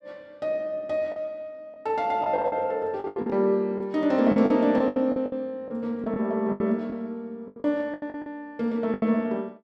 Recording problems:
lost packets; 12% of the sound replaced, filled with the last packet

